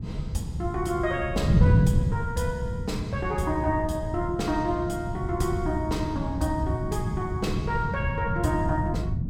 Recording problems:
wind noise; below 170 Hz, SNR 0 dB

